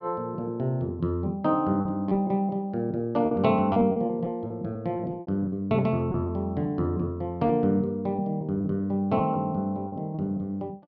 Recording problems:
low-pass filter; nothing above 8 kHz
packet loss; 7% of the sound replaced, filled with repeated pitch periods

